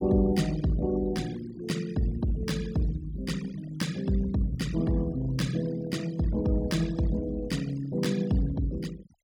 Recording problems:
denoising artefacts; signal-to-artefact ratio 17 dB

